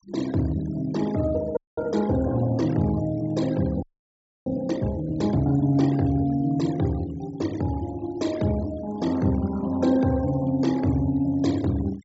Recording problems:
treble missing; nothing above 8 kHz
noise reduction artefacts; signal-to-artefact ratio 20 dB
audio freezing; at 1.5 s and at 4 s for 0.5 s

